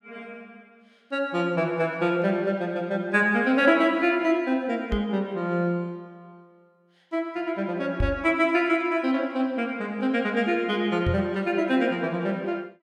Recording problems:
microphone bump; at 5 s, at 8 s and at 11 s; peak +2 dB vs average level

